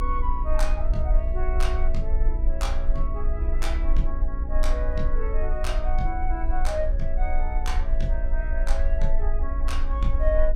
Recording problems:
hum; 60 Hz, harmonics up to 1 kHz, SNR 10 dB
low-frequency rumble; below 44 Hz, strongest tone 20 Hz, SNR -5 dB

